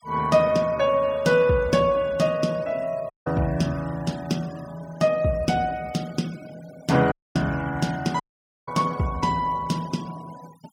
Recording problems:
noise reduction artefacts; signal-to-artefact ratio 22 dB
dropout; at 3 s, at 7 s and at 8 s

